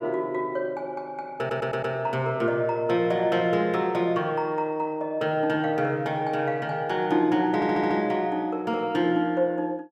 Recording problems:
stutter; at 1.5 s and at 7.5 s

